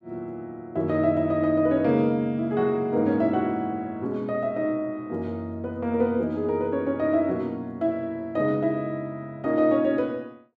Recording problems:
none

